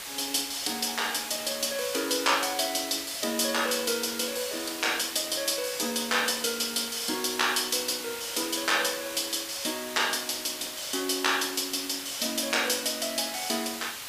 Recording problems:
hiss; slope +1 dB per octave, SNR 8 dB

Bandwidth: 15 kHz